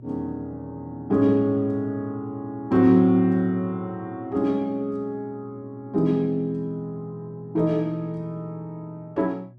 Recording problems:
mains hum; 60 Hz, harmonics up to 360 Hz, SNR 21 dB

